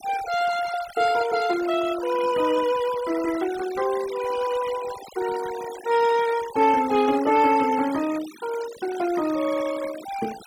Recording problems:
noise reduction artefacts; signal-to-artefact ratio 15 dB

